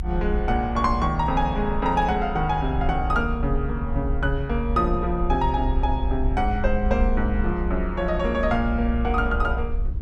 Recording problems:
low-frequency rumble; below 62 Hz, SNR 4 dB

